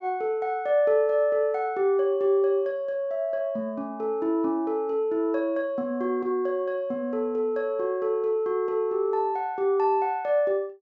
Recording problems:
low-pass filter; nothing above 8 kHz

